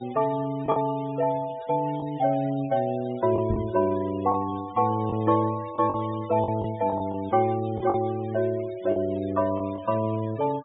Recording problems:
low-pass filter; nothing above 4 kHz
noise reduction artefacts; signal-to-artefact ratio 21 dB
packet loss; 5% of the sound replaced, filled with the last packet
microphone bump; at 3.5 s; peak 0 dB vs average level

